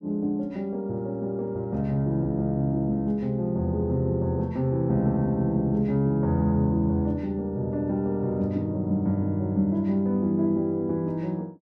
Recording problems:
none

